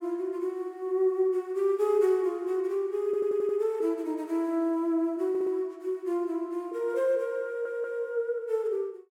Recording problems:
stutter; at 3 s, at 5.5 s and at 7.5 s

